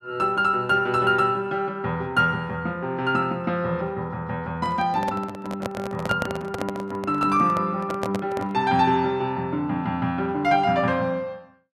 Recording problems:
handling noise; from 4.5 to 8.5 s; peak -1 dB vs average level

